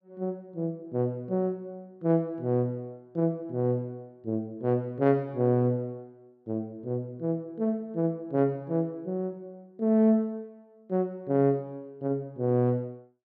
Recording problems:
none

